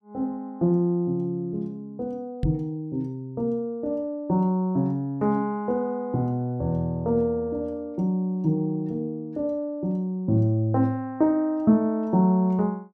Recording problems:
microphone bump; at 2.5 s; peak +3 dB vs average level

